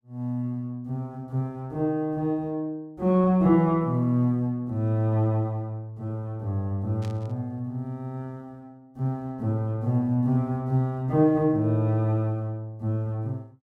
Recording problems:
static burst; at 7 s; peak -14 dB vs average level

